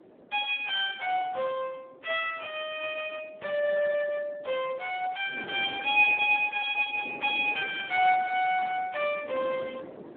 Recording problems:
phone line; 260 Hz to 3.5 kHz, Speex
wind noise; below 580 Hz, SNR 19 dB

